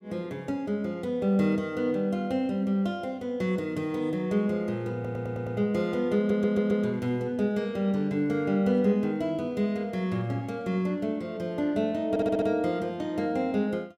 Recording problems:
audio stuttering; at 5 s, at 6 s and at 12 s

